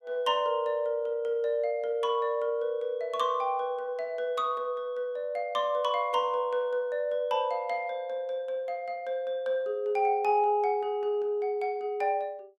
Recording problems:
none

